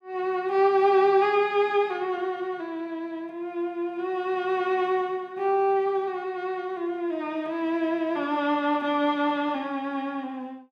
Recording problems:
none

